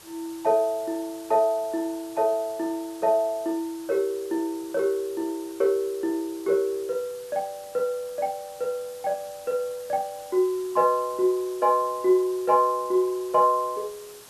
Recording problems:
background hiss; SNR 20 dB

